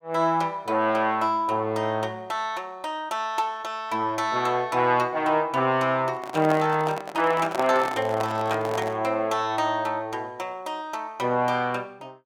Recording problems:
microphone handling noise; from 6 to 9 s; peak +1 dB vs average level

